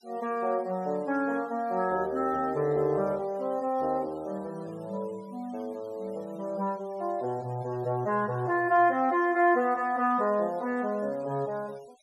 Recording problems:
denoising artefacts; signal-to-artefact ratio 27 dB

